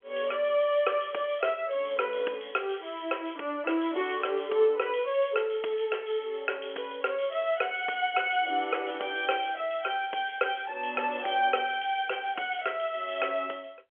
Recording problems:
phone line; 300 Hz to 3.3 kHz, G.711

